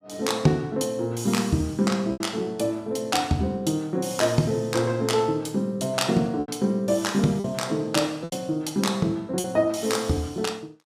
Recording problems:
lost packets; 3% of the sound replaced, filled with repeated pitch periods

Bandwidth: 15.5 kHz